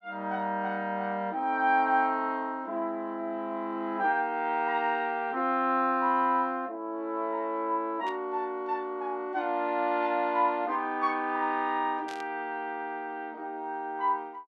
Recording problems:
burst of static; at 8 s and at 12 s; peak -11 dB vs average level

